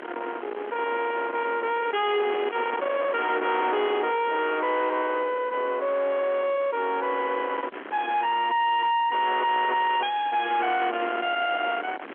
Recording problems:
phone line; 260 Hz to 3.2 kHz, G.711
distorted audio; soft clipping, signal-to-distortion ratio 6 dB
wind on the microphone; below 1.7 kHz, SNR 10 dB

